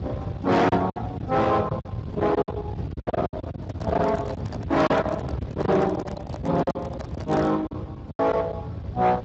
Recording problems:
lossy codec; Speex, log-spectral distance 3 dB, nothing above 7.3 kHz
distorted audio; soft clipping, signal-to-distortion ratio 8 dB
low-frequency rumble; below 620 Hz, SNR 9 dB
packet loss; 15% of the sound replaced, filled with silence
handling noise; from 3.5 to 7.5 s; peak -5 dB vs average level

